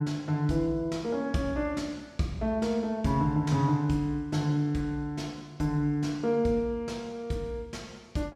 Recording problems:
none

